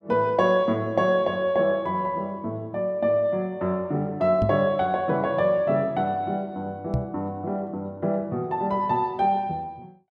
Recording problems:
microphone bump; at 4.5 s and at 7 s; peak +2 dB vs average level

